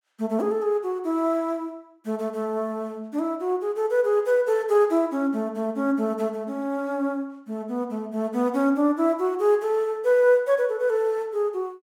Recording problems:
none

